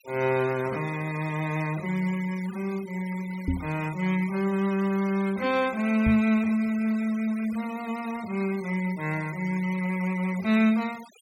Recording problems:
noise reduction artefacts; signal-to-artefact ratio 19 dB
microphone bump; at 3.5 s and at 6 s; peak +4 dB vs average level

